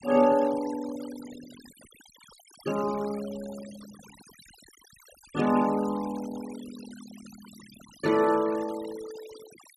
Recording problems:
denoising artefacts; signal-to-artefact ratio 19 dB

